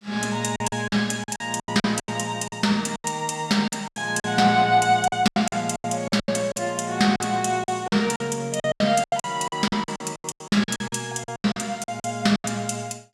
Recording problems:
lost packets; 18% of the sound replaced, filled with silence

